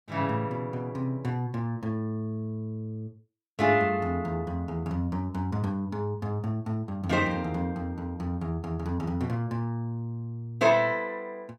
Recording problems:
none

